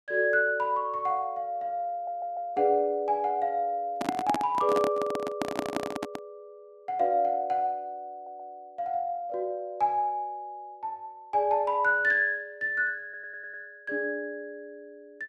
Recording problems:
audio stuttering; 4 times, first at 2 s
microphone handling noise; from 4 to 6 s; peak +3 dB vs average level

